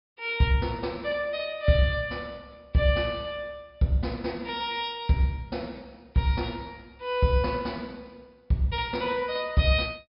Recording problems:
treble missing; nothing above 5.5 kHz

